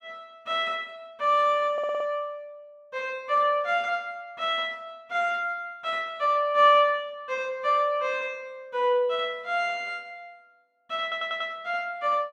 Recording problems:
audio stuttering; at 1.5 s and at 11 s

